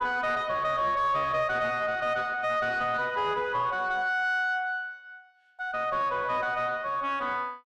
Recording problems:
distortion; soft clipping, signal-to-distortion ratio 10 dB

